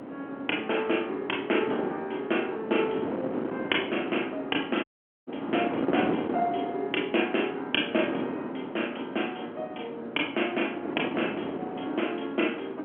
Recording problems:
telephone audio; 240 Hz to 3.3 kHz, G.711
wind on the microphone; below 600 Hz, SNR 5 dB
dropout; at 5 s

